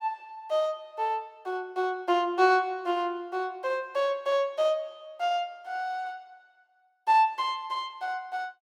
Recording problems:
none

